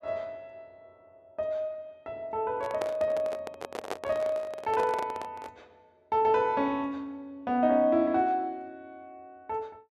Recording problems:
handling noise; from 2.5 to 5.5 s; peak 0 dB vs average level

